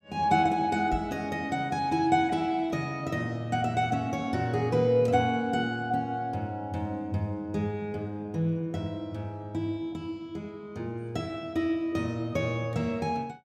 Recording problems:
knock on the microphone; at 1 s; peak -2 dB vs average level

